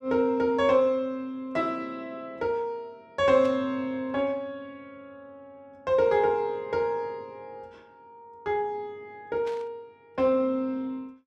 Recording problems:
static burst; at 3.5 s and at 9.5 s; peak -14 dB vs average level

